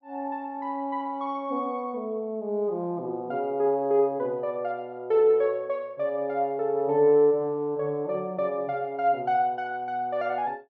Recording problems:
none

